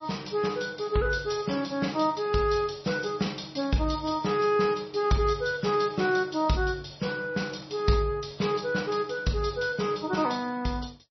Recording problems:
lossy compression; MP3, log-spectral distance 7 dB, nothing above 5.8 kHz

